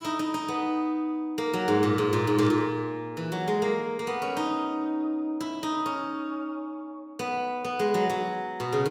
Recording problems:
burst of static; at 2.5 s; peak -13 dB vs average level

